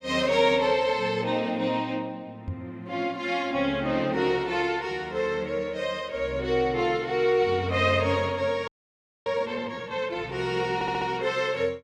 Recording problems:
knock on the microphone; at 2.5 s; peak -3 dB vs average level
audio freezing; at 8.5 s for 0.5 s
audio stuttering; at 11 s

